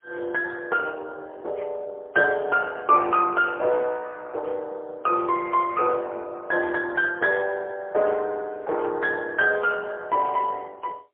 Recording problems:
phone line; 320 Hz to 2.8 kHz, AMR-NB, then MP3

